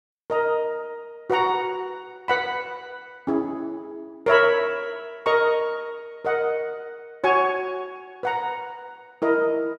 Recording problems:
none

